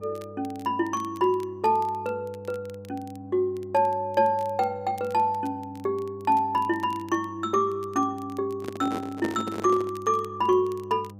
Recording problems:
hum; 50 Hz, harmonics up to 800 Hz, SNR 18 dB
crackling; vinyl, SNR 28 dB
handling noise; from 8.5 to 10 s; peak -1 dB vs average level

